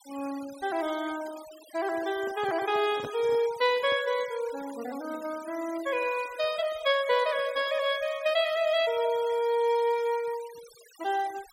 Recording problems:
noise reduction artefacts; signal-to-artefact ratio 18 dB
handling noise; from 2 to 4 s; peak -6 dB vs average level

